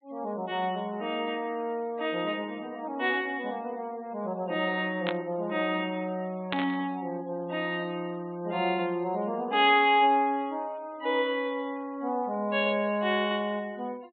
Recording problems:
treble cut off; nothing above 4 kHz
denoising artefacts; signal-to-artefact ratio 27 dB
burst of static; at 5 s and at 6.5 s; peak +1 dB vs average level

